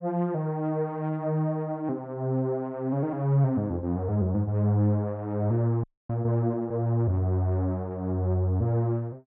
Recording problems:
frozen audio; at 6 s

